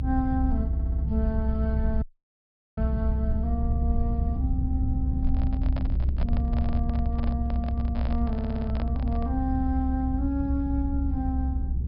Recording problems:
low-pass filter; nothing above 5.5 kHz
low-frequency rumble; below 72 Hz, strongest tone 66 Hz, SNR -4 dB
audio stuttering; at 0.5 s and at 8.5 s
dropout; at 2 s for 1 s
handling noise; from 5 to 9.5 s; peak -1 dB vs average level

